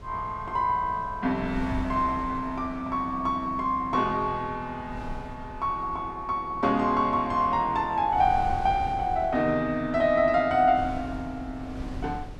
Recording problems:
wind on the microphone; below 170 Hz, SNR 15 dB

